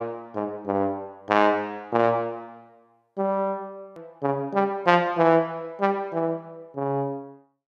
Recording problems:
edit click; at 4 s

